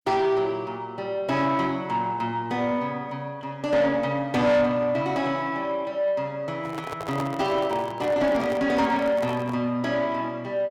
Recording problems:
distortion; soft clipping, signal-to-distortion ratio 10 dB
handling noise; from 6.5 to 9.5 s; peak -4 dB vs average level

